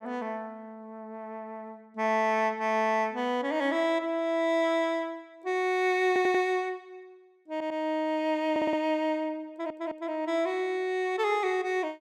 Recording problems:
stutter; 4 times, first at 6 s

